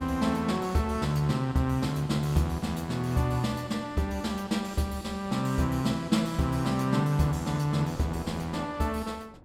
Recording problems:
wind on the microphone; below 530 Hz, SNR 24 dB

